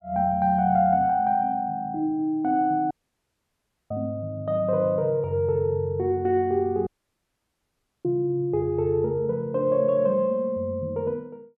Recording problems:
dropout; at 3 s for 1 s and at 7 s for 1 s

